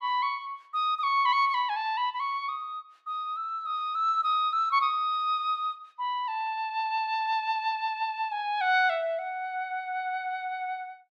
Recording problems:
none

